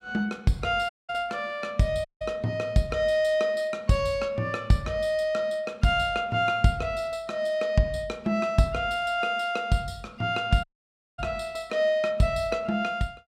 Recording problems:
dropout; at 1 s, at 2 s and at 11 s for 0.5 s

